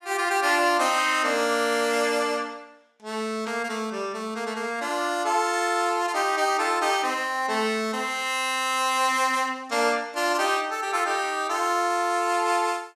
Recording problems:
static burst; at 3.5 s; peak -14 dB vs average level

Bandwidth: 15 kHz